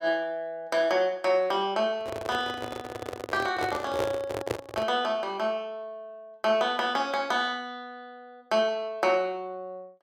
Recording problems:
microphone handling noise; from 2 to 5 s; peak +3 dB vs average level

